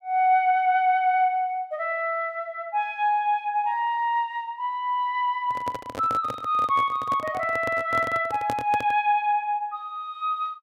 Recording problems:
microphone handling noise; from 5.5 to 9 s; peak -3 dB vs average level

